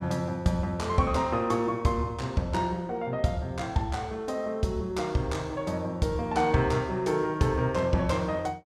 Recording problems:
none

